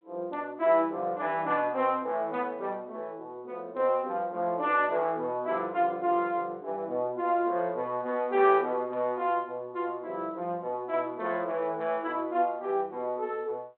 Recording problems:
telephone audio; 220 Hz to 3.8 kHz, G.726

